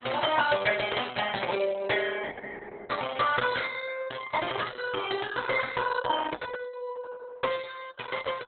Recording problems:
lossy compression; Opus, log-spectral distance 6 dB, nothing above 3.7 kHz

